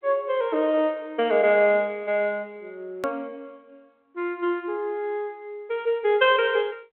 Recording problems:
phone line; 240 Hz to 3.6 kHz, G.726
click at an edit; at 3 s

